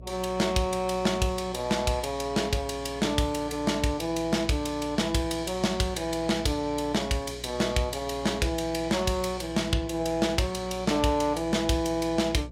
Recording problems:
hum; 60 Hz, harmonics up to 660 Hz, SNR 17 dB

